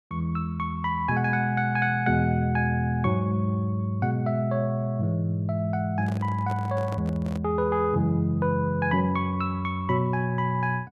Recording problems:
handling noise; from 6 to 7.5 s; peak -8 dB vs average level

